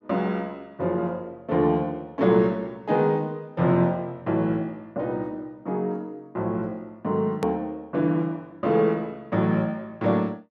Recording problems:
hard cut with a click; at 7.5 s

